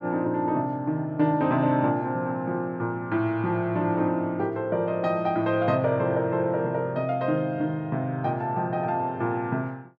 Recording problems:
none

